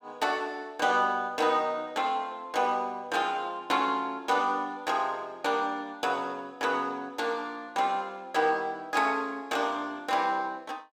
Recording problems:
none

